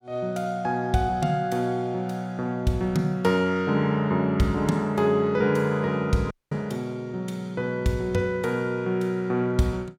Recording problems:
audio cutting out; at 6.5 s

